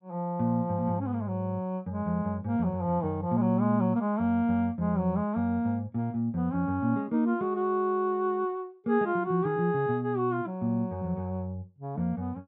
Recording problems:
none

